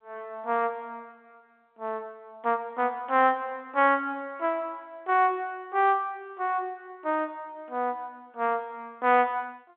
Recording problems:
telephone audio; 300 Hz to 3.5 kHz, G.711

